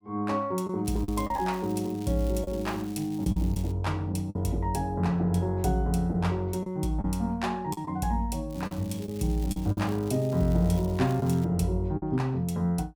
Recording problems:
packet loss; 5% of the sound replaced, filled with the last packet
crackling; from 1 to 3.5 s and from 8.5 to 11 s; loose cable, SNR 22 dB

